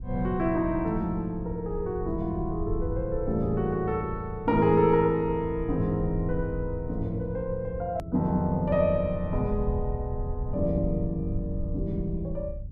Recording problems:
low-frequency rumble; below 94 Hz, SNR 9 dB
click at an edit; at 8 s

